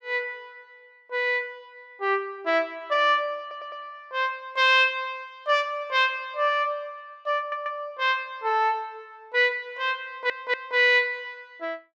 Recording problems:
audio stuttering; at 3.5 s, at 7.5 s and at 10 s

